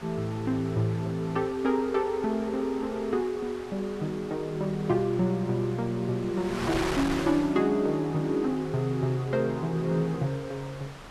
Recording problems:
wind on the microphone; below 2.4 kHz, SNR 12 dB

